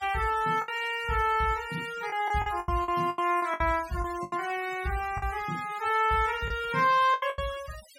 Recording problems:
denoising artefacts; signal-to-artefact ratio 18 dB
packet loss; 9% of the sound replaced, filled with the last packet

